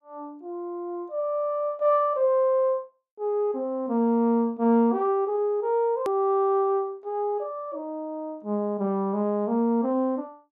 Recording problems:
edit click; at 6 s

